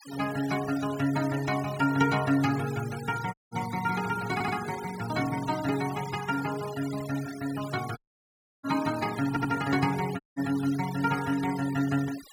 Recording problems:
noise reduction artefacts; signal-to-artefact ratio 14 dB
dropout; at 3.5 s, at 8 s for 0.5 s and at 10 s
audio stuttering; at 4.5 s and at 9.5 s

